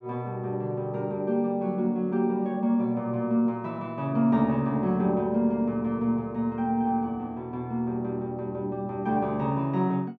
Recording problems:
none

